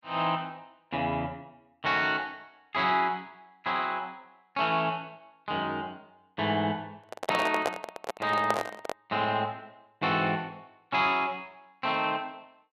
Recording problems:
microphone handling noise; from 7 to 9 s; peak +5 dB vs average level

